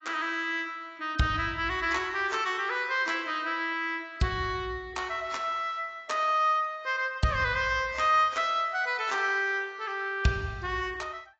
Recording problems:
codec artefacts; AAC, log-spectral distance 2 dB, nothing above 7.3 kHz

